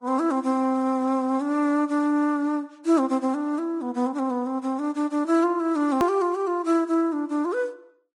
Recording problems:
lossy compression; Vorbis, log-spectral distance 2 dB, nothing above 20.1 kHz
edit click; at 6 s

